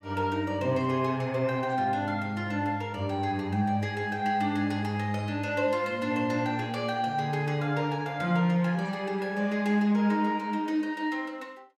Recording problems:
none

